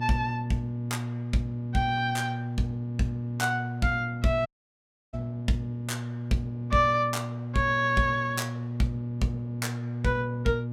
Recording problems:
hum; 60 Hz, harmonics up to 600 Hz, SNR 4 dB
dropout; at 4.5 s for 0.5 s

